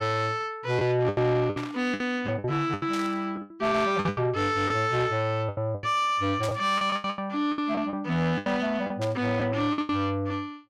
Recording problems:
distorted audio; soft clipping, signal-to-distortion ratio 11 dB
packet loss; 13% of the sound replaced, filled with the last packet
burst of static; 4 times, first at 1.5 s; peak -6 dB vs average level

